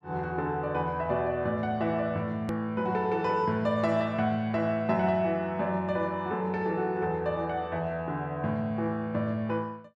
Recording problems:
click at an edit; at 2.5 s

